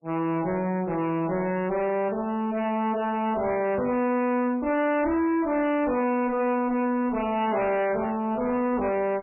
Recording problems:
codec artefacts; MP3, log-spectral distance 3 dB, nothing above 2.4 kHz
distorted audio; hard clipping, uneven, signal-to-distortion ratio 4 dB

